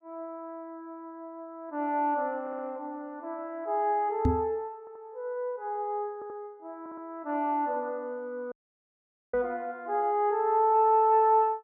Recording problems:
audio stuttering; 4 times, first at 2.5 s
microphone thump; at 4.5 s and at 9.5 s; peak +6 dB vs average level
audio cutting out; at 8.5 s for 1 s

